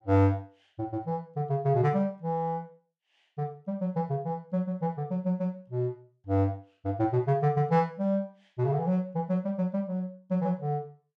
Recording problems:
none

